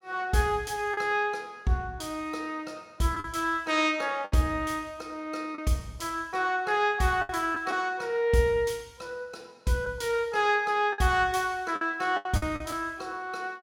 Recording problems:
packet loss; 4% of the sound replaced, filled with the last packet

